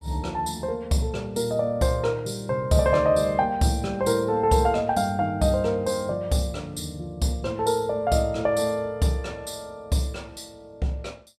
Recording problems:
none

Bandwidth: 14 kHz